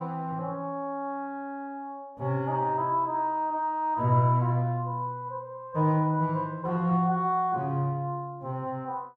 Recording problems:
none

